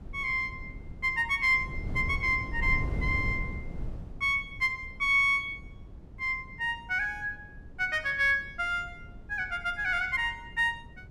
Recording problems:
wind noise; below 140 Hz, SNR 13 dB

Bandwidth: 15 kHz